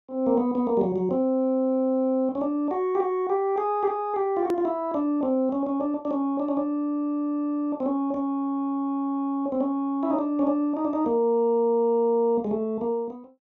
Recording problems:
click at an edit; at 4.5 s

